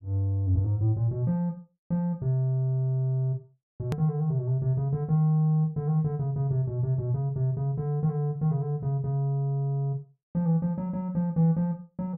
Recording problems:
hard cut with a click; at 4 s

